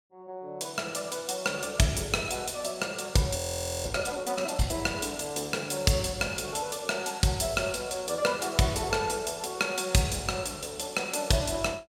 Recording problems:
audio freezing; at 3.5 s

